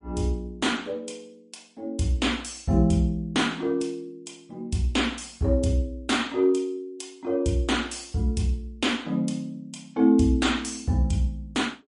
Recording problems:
lossy codec; MP3, log-spectral distance 3 dB, nothing above 10.4 kHz

